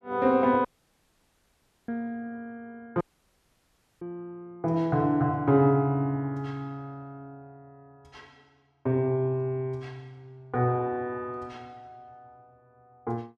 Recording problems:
dropout; at 0.5 s for 1 s and at 3 s for 1 s

